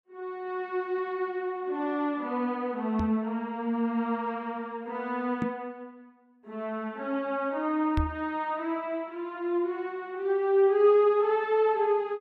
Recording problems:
microphone thump; at 3 s, at 5.5 s and at 8 s; peak +3 dB vs average level

